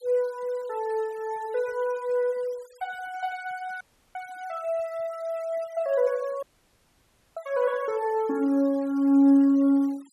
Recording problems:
denoising artefacts; signal-to-artefact ratio 27 dB
dropout; at 4 s and at 6.5 s for 1 s

